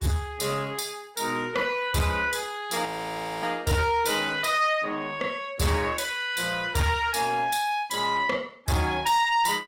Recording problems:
lossy codec; Opus, log-spectral distance 4 dB, nothing above 16.5 kHz
distortion; soft clipping, signal-to-distortion ratio 11 dB
frozen audio; at 3 s for 0.5 s

